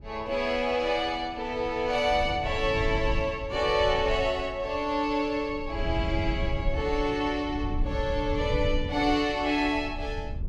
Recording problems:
low-frequency rumble; below 94 Hz, SNR 8 dB

